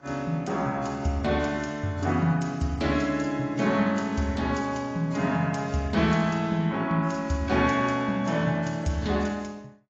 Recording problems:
lossy codec; AAC, log-spectral distance 3 dB

